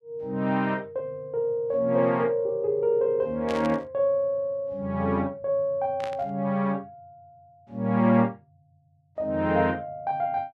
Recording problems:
burst of static; at 3.5 s and at 6 s; peak -8 dB vs average level

